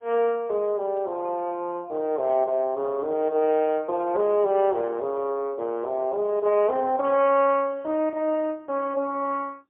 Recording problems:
telephone audio; 300 Hz to 3.1 kHz, AMR-NB, then MP3

